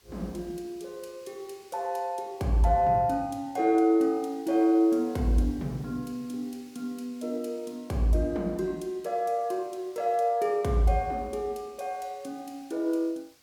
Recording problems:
hiss; slope 0 dB per octave, SNR 30 dB

